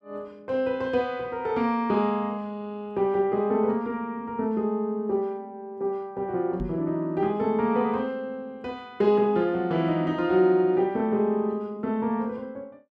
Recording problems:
microphone bump; at 6.5 s; peak -3 dB vs average level

